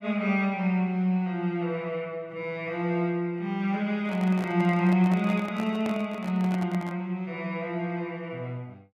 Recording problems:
handling noise; from 4 to 7 s; peak -5 dB vs average level

